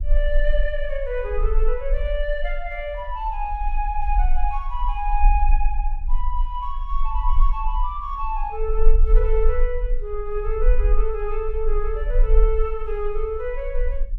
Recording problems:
rumble; below 36 Hz, strongest tone 18 Hz, SNR -2 dB

